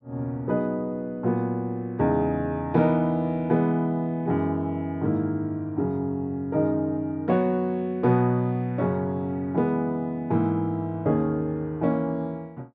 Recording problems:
treble missing; nothing above 8 kHz

